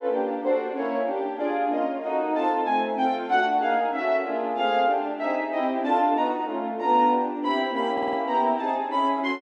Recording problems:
audio stuttering; at 8 s

